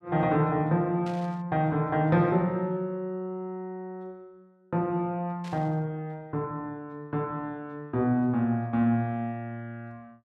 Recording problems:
burst of static; at 1 s and at 5.5 s; peak -13 dB vs average level

